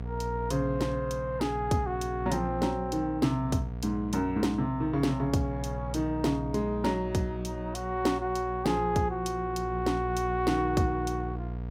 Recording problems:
hum; 60 Hz, harmonics up to 720 Hz, SNR 8 dB

